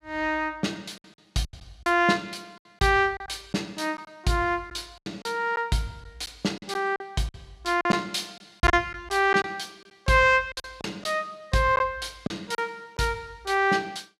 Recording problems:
lost packets; 7% of the sound replaced, filled with silence

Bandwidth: 14.5 kHz